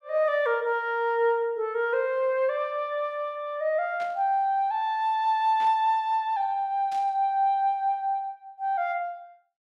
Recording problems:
static burst; at 4 s, at 5.5 s and at 7 s; peak -15 dB vs average level

